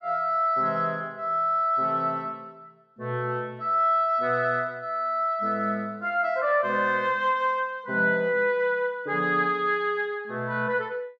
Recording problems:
none

